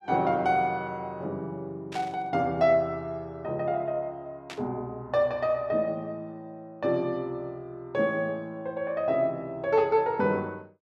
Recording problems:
static burst; at 2 s and at 4.5 s; peak -7 dB vs average level

